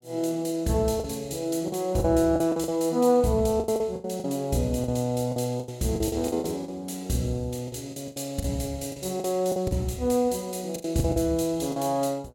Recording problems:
packet loss; 11% of the sound replaced, filled with the last packet

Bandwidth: 17 kHz